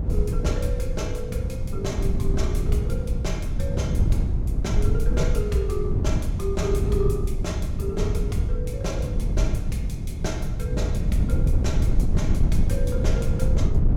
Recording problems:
wind noise; below 110 Hz, SNR -6 dB

